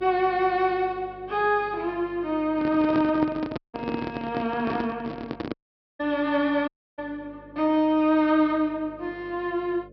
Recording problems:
treble cut off; nothing above 5.5 kHz
electrical hum; 50 Hz, harmonics up to 600 Hz, SNR 25 dB
handling noise; from 2.5 to 5.5 s; peak +1 dB vs average level
dropout; at 3.5 s, at 5.5 s and at 6.5 s

